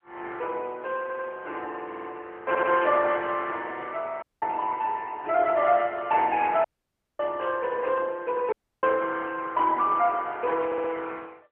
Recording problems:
telephone audio; 340 Hz to 3.1 kHz, AMR-NB
stutter; 4 times, first at 1 s
dropout; at 4 s, at 6.5 s for 0.5 s and at 8.5 s

